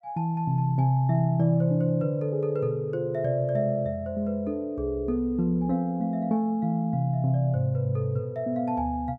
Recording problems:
none

